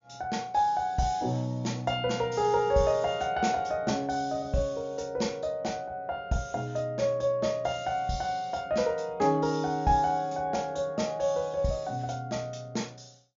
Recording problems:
treble missing; nothing above 7.2 kHz

